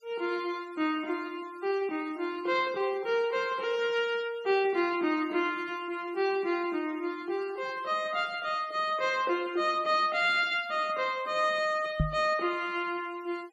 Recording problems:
denoising artefacts; signal-to-artefact ratio 23 dB
knock on the microphone; at 12 s; peak +5 dB vs average level

